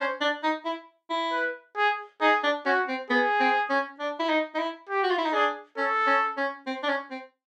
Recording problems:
none

